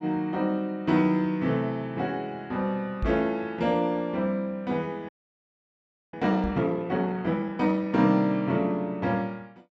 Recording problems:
knock on the microphone; at 3 s and at 6.5 s; peak -1 dB vs average level
frozen audio; at 5 s for 1 s

